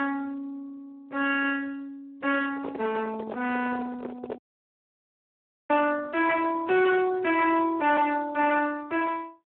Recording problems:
phone line; 240 Hz to 3.2 kHz, Speex
distortion; soft clipping, signal-to-distortion ratio 8 dB
handling noise; from 2.5 to 4.5 s; peak -6 dB vs average level
dropout; at 4.5 s for 1.5 s

